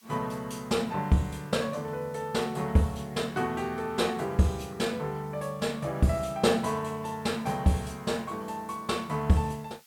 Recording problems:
background hiss; slope +4 dB per octave, SNR 28 dB

